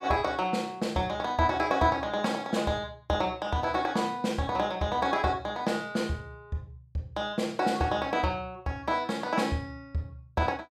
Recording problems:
none

